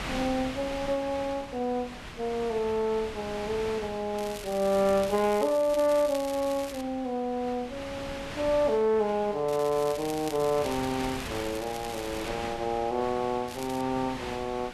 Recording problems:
wind noise; below 2.9 kHz, SNR 11 dB
crackle; from 4 to 7 s, from 9.5 to 12 s and at 13 s; loose cable, SNR 14 dB

